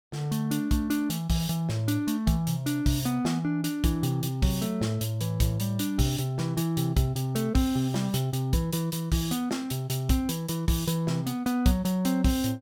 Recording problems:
none

